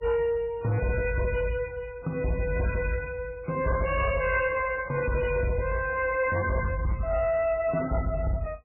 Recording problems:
codec artefacts; MP3, log-spectral distance 4 dB, nothing above 2.4 kHz
distorted audio; hard clipping, signal-to-distortion ratio 11 dB

